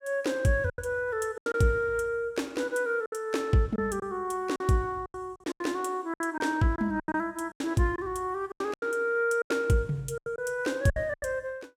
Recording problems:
packet loss; 11% of the sound replaced, filled with silence

